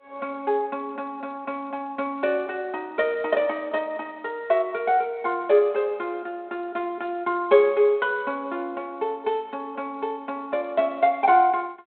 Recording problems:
phone line; 300 Hz to 3.5 kHz, G.726

